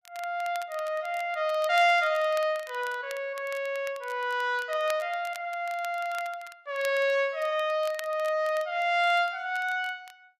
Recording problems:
crackle; vinyl, SNR 21 dB

